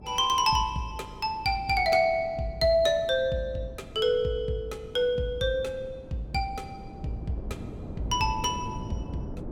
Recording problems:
wind noise; below 290 Hz, SNR 15 dB

